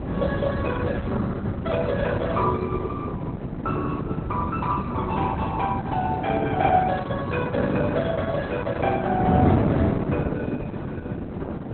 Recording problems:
lossy compression; Opus, log-spectral distance 3 dB, nothing above 3.7 kHz
wind on the microphone; below 340 Hz, SNR 1 dB

